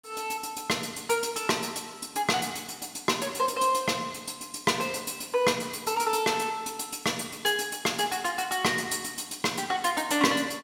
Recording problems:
none

